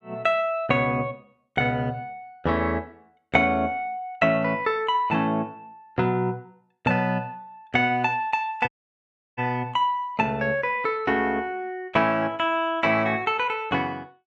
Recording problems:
dropout; at 8.5 s for 0.5 s

